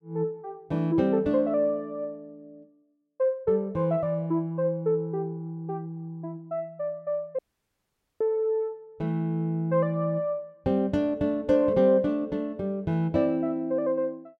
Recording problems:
dropout; at 7.5 s for 1 s

